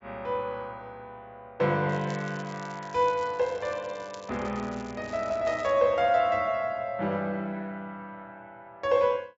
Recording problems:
treble cut off; nothing above 8 kHz
crackle; from 2 to 5.5 s; loose cable, SNR 23 dB

